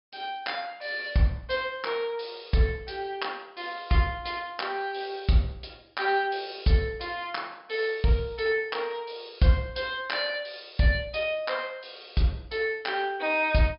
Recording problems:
treble missing; nothing above 5.5 kHz

